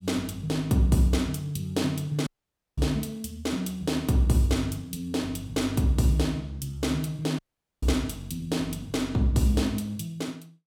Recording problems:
dropout; at 2.5 s for 0.5 s and at 7.5 s

